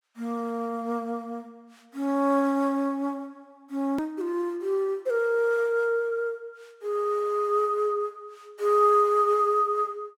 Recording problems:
hard cut with a click; at 4 s

